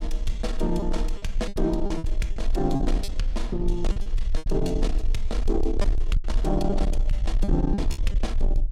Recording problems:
distortion; soft clipping, signal-to-distortion ratio 11 dB
low-frequency rumble; below 42 Hz, strongest tone 22 Hz, SNR 0 dB
lost packets; 9% of the sound replaced, filled with repeated pitch periods

